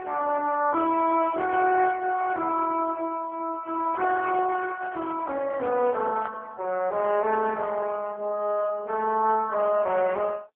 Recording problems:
phone line; 260 Hz to 3.3 kHz, AMR-NB
handling noise; from 3.5 to 6.5 s; peak -9 dB vs average level

